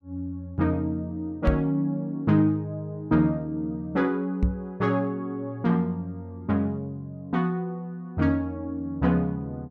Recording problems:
knock on the microphone; at 1.5 s and at 4.5 s; peak +7 dB vs average level

